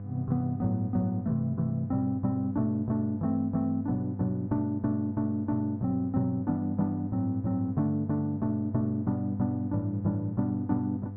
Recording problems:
hum; 50 Hz, harmonics up to 700 Hz, SNR 9 dB

